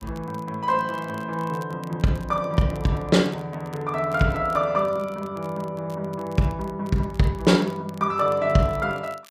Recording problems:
crackle; vinyl, SNR 27 dB

